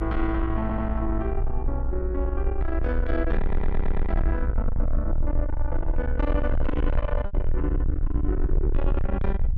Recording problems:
distortion; soft clipping, signal-to-distortion ratio 7 dB
rumble; below 60 Hz, strongest tone 18 Hz, SNR -2 dB
lost packets; 0.9% of the sound replaced, filled with repeated pitch periods
stutter; at 0.5 s and at 3.5 s

